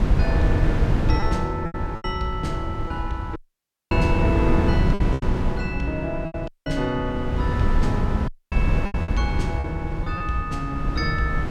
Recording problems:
wind on the microphone; below 140 Hz, SNR -2 dB
lost packets; 7% of the sound replaced, filled with repeated pitch periods
dropout; at 3.5 s for 0.5 s, at 6.5 s and at 8.5 s

